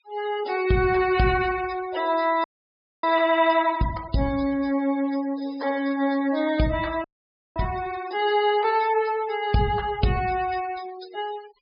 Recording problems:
treble missing; nothing above 5.5 kHz
denoising artefacts; signal-to-artefact ratio 17 dB
frozen audio; at 2.5 s for 0.5 s and at 7 s for 0.5 s

